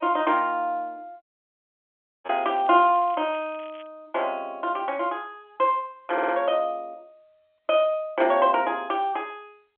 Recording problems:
phone line; 220 Hz to 3.3 kHz, G.711
lost packets; 1.8% of the sound replaced, filled with repeated pitch periods
dropout; at 1 s for 1 s
crackling; from 2 to 4 s; loose cable, SNR 27 dB
audio stuttering; at 6 s

